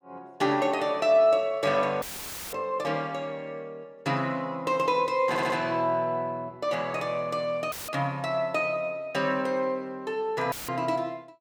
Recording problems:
audio cutting out; at 2 s for 0.5 s, at 7.5 s and at 11 s; filled with static
audio stuttering; at 5.5 s

